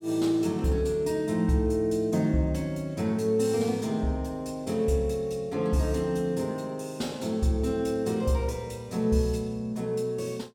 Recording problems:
none

